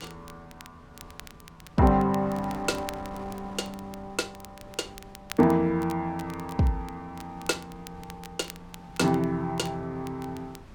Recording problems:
wind noise; below 480 Hz, SNR 21 dB
crackling; vinyl, SNR 20 dB

